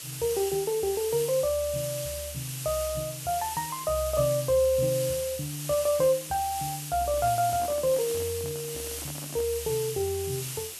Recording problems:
hiss; SNR 7 dB
microphone handling noise; from 7 to 9.5 s; peak -10 dB vs average level

